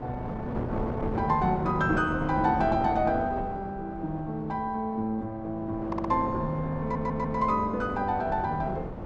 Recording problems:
wind noise; below 610 Hz, SNR 8 dB
audio stuttering; at 6 s and at 7 s

